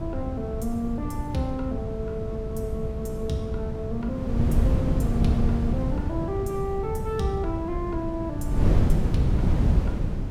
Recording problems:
wind on the microphone; below 160 Hz, SNR -3 dB

